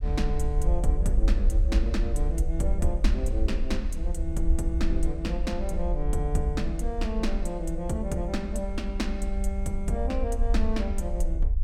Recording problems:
low-frequency rumble; below 54 Hz, SNR -2 dB

